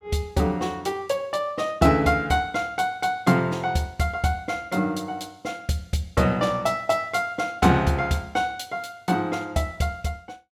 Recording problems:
none

